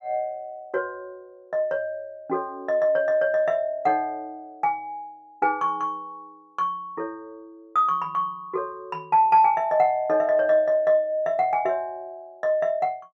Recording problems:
none

